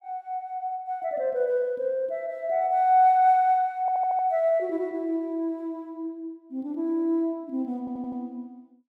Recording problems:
stutter; at 4 s and at 8 s

